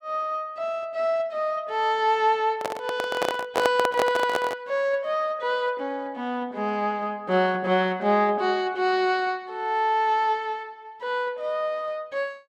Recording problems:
handling noise; from 2.5 to 4.5 s; peak +5 dB vs average level

